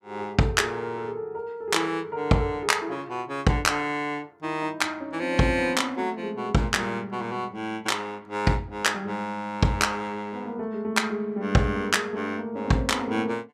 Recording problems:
none

